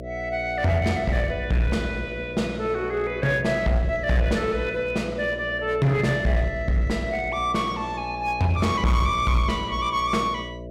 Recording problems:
distortion; hard clipping, uneven, signal-to-distortion ratio 9 dB
hum; 60 Hz, harmonics up to 660 Hz, SNR 13 dB

